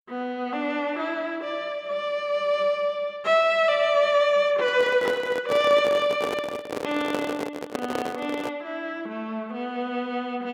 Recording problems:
microphone handling noise; from 4.5 to 8.5 s; peak 0 dB vs average level

